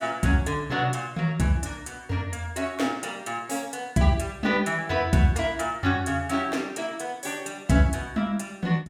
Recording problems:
none

